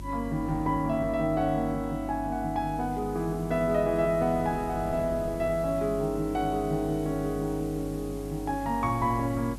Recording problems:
mains hum; 50 Hz, harmonics up to 350 Hz, SNR 13 dB
hiss; slope 0 dB per octave, SNR 23 dB
wind noise; below 380 Hz, SNR 19 dB

